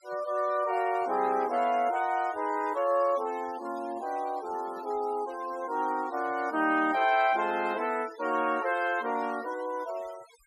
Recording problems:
denoising artefacts; signal-to-artefact ratio 21 dB

